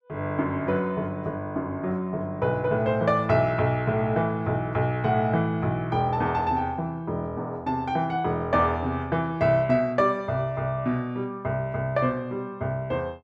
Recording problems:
none

